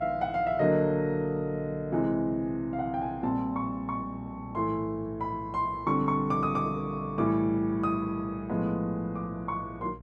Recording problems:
hum; 60 Hz, harmonics up to 900 Hz, SNR 19 dB

